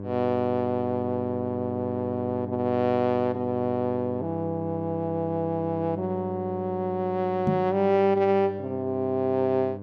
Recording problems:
hum; 50 Hz, harmonics up to 1.1 kHz, SNR 11 dB
microphone thump; at 7.5 s; peak +4 dB vs average level

